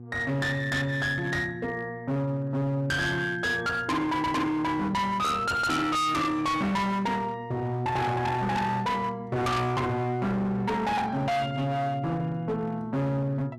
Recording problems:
distorted audio; hard clipping, signal-to-distortion ratio 6 dB
hum; 60 Hz, harmonics up to 840 Hz, SNR 16 dB

